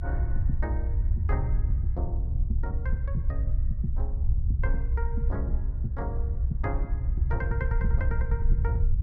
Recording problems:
low-frequency rumble; below 76 Hz, SNR -9 dB
wind noise; below 60 Hz, SNR 3 dB

